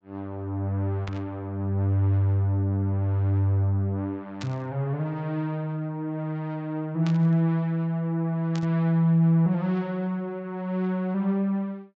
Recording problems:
low-pass filter; nothing above 8 kHz
burst of static; 4 times, first at 1 s; peak -8 dB vs average level

